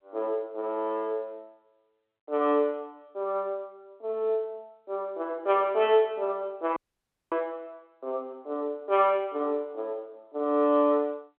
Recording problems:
phone line; 240 Hz to 3.5 kHz, G.711
audio cutting out; at 7 s for 0.5 s

